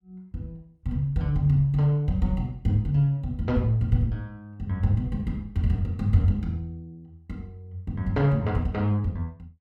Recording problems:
none

